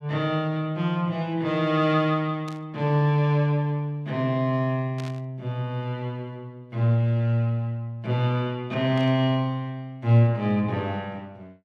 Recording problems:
burst of static; at 2.5 s, at 5 s and at 9 s; peak -12 dB vs average level

